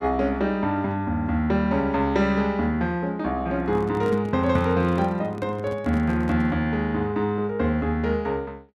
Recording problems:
handling noise; from 3.5 to 6.5 s; peak -5 dB vs average level

